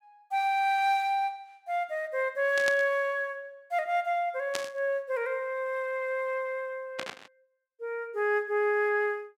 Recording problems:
burst of static; at 2.5 s, at 4.5 s and at 7 s; peak 0 dB vs average level

